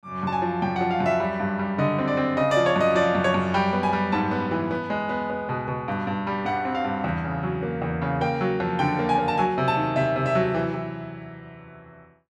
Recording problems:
none

